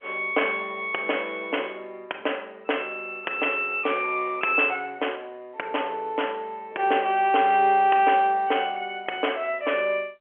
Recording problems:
phone line; 320 Hz to 3.2 kHz, G.711

